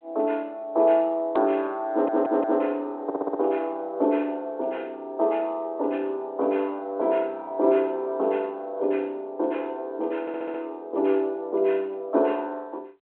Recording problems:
phone line; 300 Hz to 3.8 kHz, G.726
audio stuttering; at 2 s, at 3 s and at 10 s

